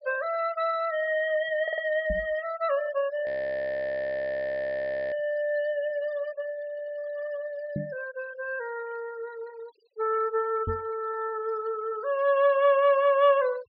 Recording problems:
low-pass filter; nothing above 5.5 kHz
noise reduction artefacts; signal-to-artefact ratio 22 dB
audio stuttering; at 1.5 s and at 6.5 s
microphone bump; at 2 s, at 8 s and at 11 s; peak -1 dB vs average level
frozen audio; at 3.5 s for 2 s

